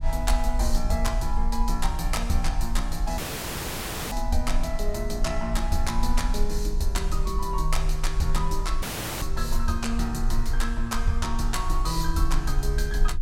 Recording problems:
rumble; below 42 Hz, strongest tone 22 Hz, SNR 0 dB
audio cutting out; at 3 s for 1 s and at 9 s

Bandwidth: 16.5 kHz